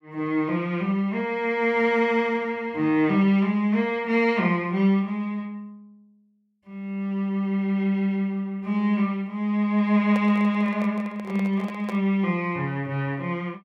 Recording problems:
handling noise; from 10 to 12 s; peak -7 dB vs average level

